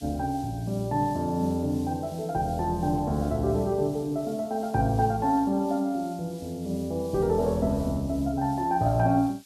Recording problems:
hiss; SNR 23 dB

